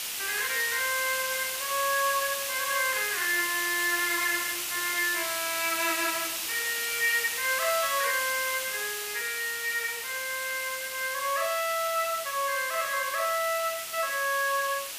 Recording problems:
hiss; SNR 3 dB

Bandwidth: 15 kHz